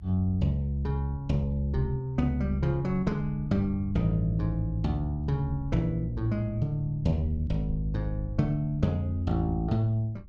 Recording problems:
low-frequency rumble; below 76 Hz, SNR 15 dB

